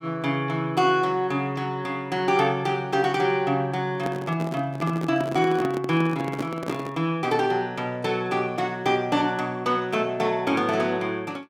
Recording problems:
microphone handling noise; from 4 to 7 s; peak -1 dB vs average level

